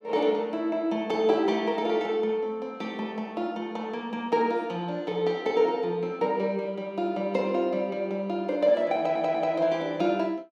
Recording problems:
stutter; at 9 s

